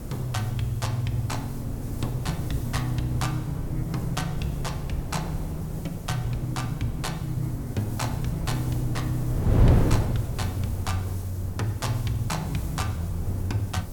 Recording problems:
background hiss; SNR 18 dB
wind noise; below 190 Hz, SNR 2 dB

